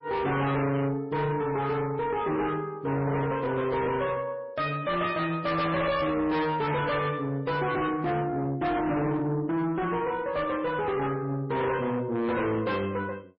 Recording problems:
lossy codec; MP3, log-spectral distance 2 dB, nothing above 5.3 kHz
distorted audio; soft clipping, signal-to-distortion ratio 7 dB

